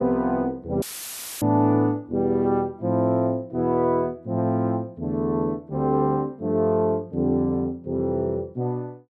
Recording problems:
audio cutting out; at 1 s for 0.5 s; filled with static

